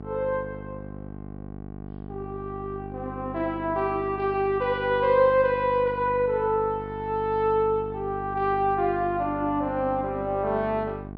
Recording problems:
treble missing; nothing above 5.5 kHz
hum; 50 Hz, harmonics up to 1.1 kHz, SNR 13 dB

